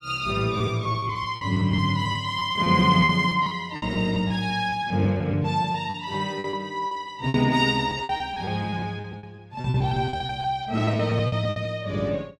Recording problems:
packet loss; 15% of the sound replaced, filled with repeated pitch periods

